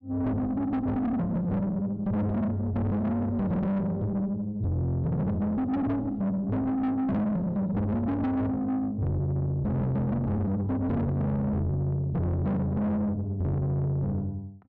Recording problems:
distortion; soft clipping, signal-to-distortion ratio 8 dB

